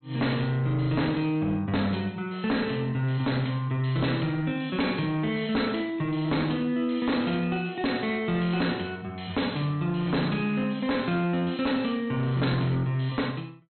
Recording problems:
treble cut off; nothing above 4.2 kHz
distorted audio; hard clipping, uneven, signal-to-distortion ratio 10 dB

